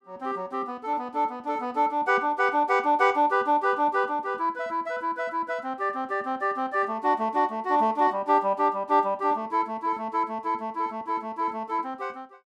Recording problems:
none

